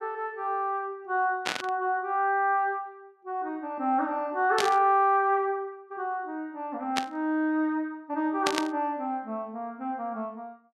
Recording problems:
static burst; 4 times, first at 1.5 s; peak +5 dB vs average level

